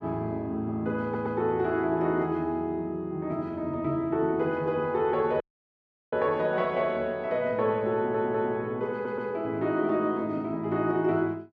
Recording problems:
audio stuttering; at 1 s, at 8 s and at 9 s
dropout; at 5.5 s for 0.5 s

